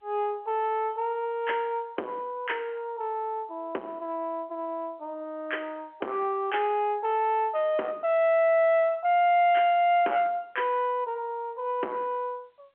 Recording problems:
telephone audio; 280 Hz to 3.3 kHz, G.711
distorted audio; soft clipping, signal-to-distortion ratio 11 dB

